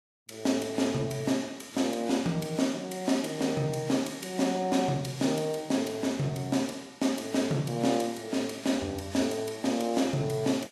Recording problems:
codec artefacts; Vorbis, log-spectral distance 4 dB, nothing above 13.5 kHz

